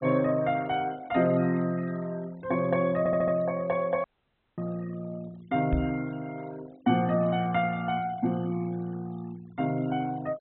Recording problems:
low-pass filter; nothing above 4 kHz
denoising artefacts; signal-to-artefact ratio 23 dB
stutter; at 3 s
audio cutting out; at 4 s for 0.5 s
microphone bump; at 5.5 s; peak +3 dB vs average level

